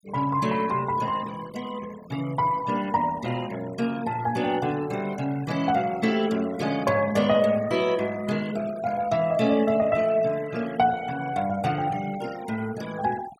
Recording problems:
noise reduction artefacts; signal-to-artefact ratio 18 dB

